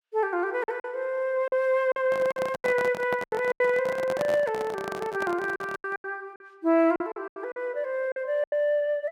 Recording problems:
lost packets; 11% of the sound replaced, filled with silence
microphone handling noise; from 2 to 6 s; peak -2 dB vs average level

